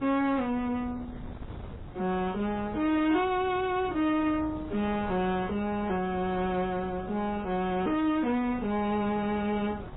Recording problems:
lossy codec; AAC, then MP3, log-spectral distance 2 dB, nothing above 3.7 kHz
distortion; soft clipping, signal-to-distortion ratio 11 dB
wind noise; below 370 Hz, SNR 15 dB

